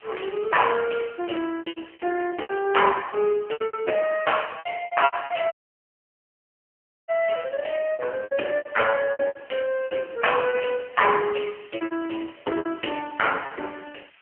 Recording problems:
phone line; 280 Hz to 3.1 kHz, AMR-NB
background hiss; SNR 27 dB
packet loss; 13% of the sound replaced, filled with repeated pitch periods
audio cutting out; at 5.5 s for 1.5 s

